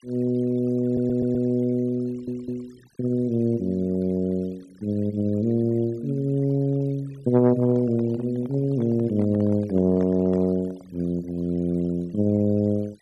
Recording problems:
denoising artefacts; signal-to-artefact ratio 28 dB
stutter; at 1 s and at 2 s
handling noise; from 7.5 to 11 s; peak -12 dB vs average level

